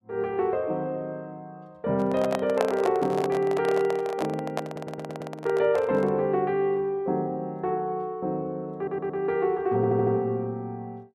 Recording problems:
microphone handling noise; from 2 to 6 s; peak +4 dB vs average level
audio stuttering; at 4.5 s, at 9 s and at 10 s

